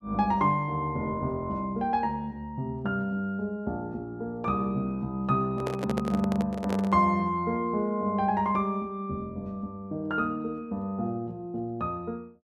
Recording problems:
handling noise; from 5.5 to 7 s; peak 0 dB vs average level

